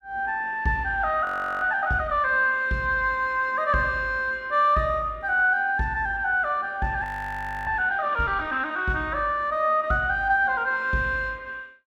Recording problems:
frozen audio; at 1.5 s and at 7 s for 0.5 s

